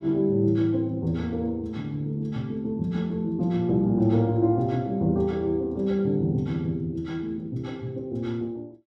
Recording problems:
none

